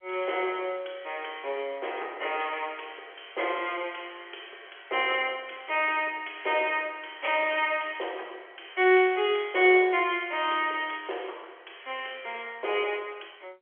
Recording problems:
phone line; 320 Hz to 3.3 kHz, G.711

